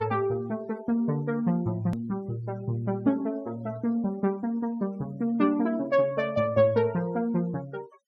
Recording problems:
denoising artefacts; signal-to-artefact ratio 27 dB
edit click; at 2 s

